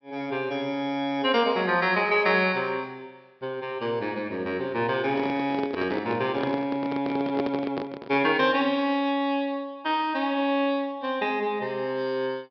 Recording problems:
treble missing; nothing above 5.5 kHz
handling noise; from 5 to 8.5 s; peak 0 dB vs average level

